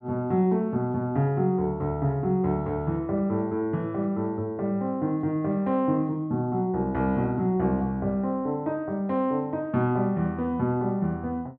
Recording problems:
none

